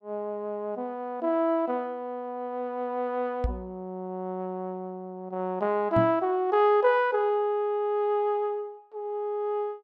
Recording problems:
microphone thump; at 3.5 s and at 6 s; peak +3 dB vs average level

